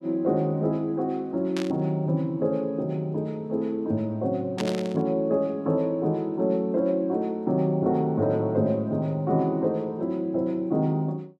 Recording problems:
burst of static; at 1.5 s and at 4.5 s; peak -4 dB vs average level

